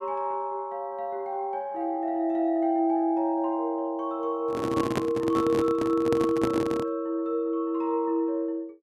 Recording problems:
microphone handling noise; from 4.5 to 7 s; peak +4 dB vs average level

